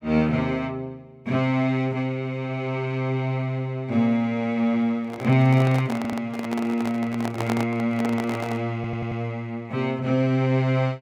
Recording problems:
handling noise; from 5 to 8.5 s; peak -2 dB vs average level
stutter; at 6 s and at 9 s

